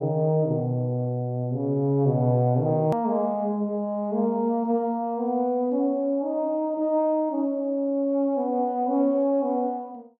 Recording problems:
low-pass filter; nothing above 8 kHz
click at an edit; at 3 s

